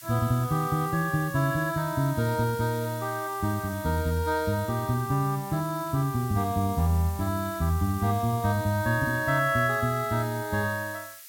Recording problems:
background hiss; SNR 16 dB

